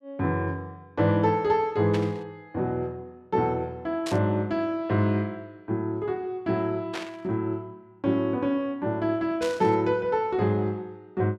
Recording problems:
static burst; 4 times, first at 2 s; peak -4 dB vs average level

